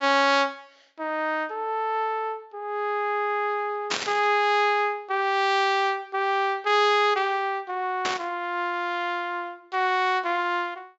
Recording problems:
low-pass filter; nothing above 8 kHz
static burst; at 4 s and at 8 s; peak +2 dB vs average level

